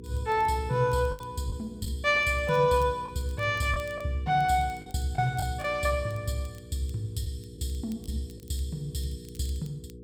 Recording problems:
hum; 60 Hz, harmonics up to 480 Hz, SNR 17 dB
crackle; vinyl, SNR 29 dB
lost packets; 4% of the sound replaced, filled with the last packet

